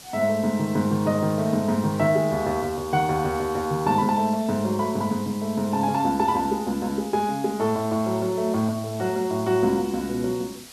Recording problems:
background hiss; slope 0 dB per octave, SNR 18 dB

